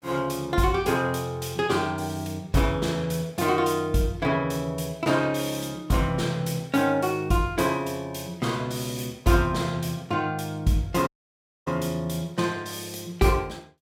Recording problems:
audio cutting out; at 11 s for 0.5 s

